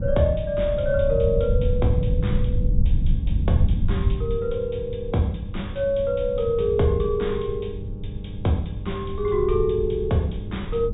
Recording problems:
treble missing; nothing above 4 kHz
mains hum; 50 Hz, harmonics up to 800 Hz, SNR 14 dB
low-frequency rumble; below 110 Hz, SNR 3 dB

